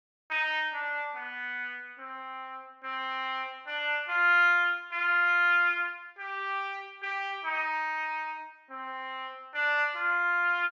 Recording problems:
none

